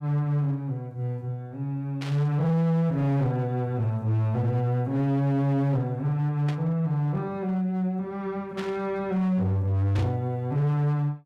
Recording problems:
distortion; hard clipping, signal-to-distortion ratio 11 dB
static burst; 4 times, first at 2 s; peak -8 dB vs average level

